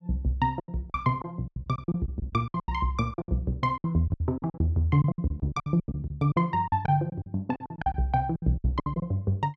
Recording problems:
lost packets; 18% of the sound replaced, filled with silence

